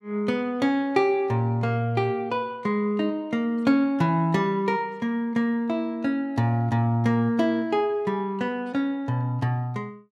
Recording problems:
none

